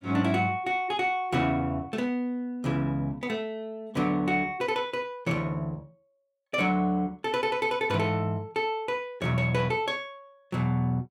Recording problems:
none

